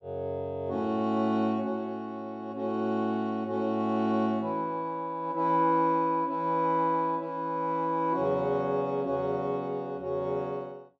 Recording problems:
none

